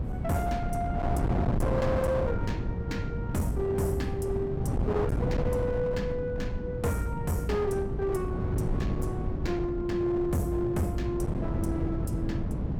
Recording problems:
distortion; hard clipping, signal-to-distortion ratio 7 dB
wind noise; below 250 Hz, SNR 1 dB

